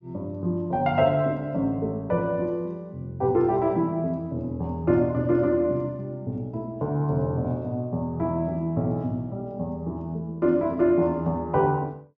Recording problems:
treble missing; nothing above 7.1 kHz

